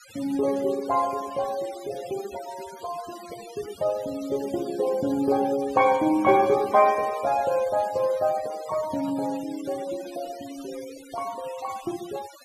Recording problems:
noise reduction artefacts; signal-to-artefact ratio 18 dB

